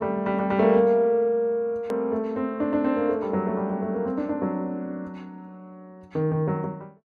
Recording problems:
hard cut with a click; at 2 s

